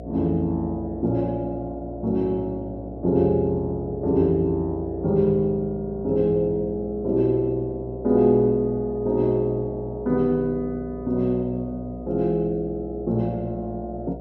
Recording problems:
hum; 60 Hz, harmonics up to 720 Hz, SNR 14 dB

